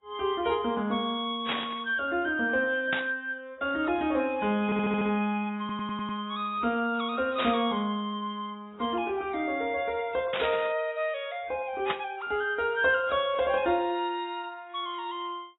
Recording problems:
lossy codec; AAC, log-spectral distance 3 dB, nothing above 3.4 kHz
static burst; 5 times, first at 1.5 s; peak +2 dB vs average level
audio stuttering; at 4.5 s and at 5.5 s

